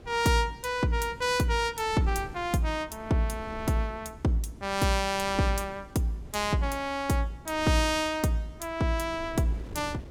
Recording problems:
wind on the microphone; below 320 Hz, SNR 19 dB

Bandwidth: 17 kHz